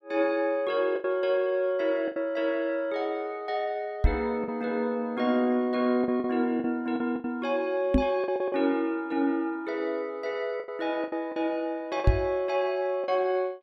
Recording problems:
packet loss; 6% of the sound replaced, filled with the last packet
microphone bump; at 4 s, at 8 s and at 12 s; peak +9 dB vs average level

